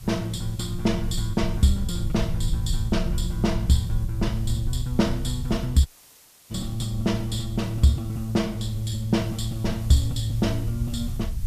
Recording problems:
hiss; slope 0 dB per octave, SNR 23 dB
rumble; below 74 Hz, SNR 8 dB
audio cutting out; at 6 s for 0.5 s

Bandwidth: 14.5 kHz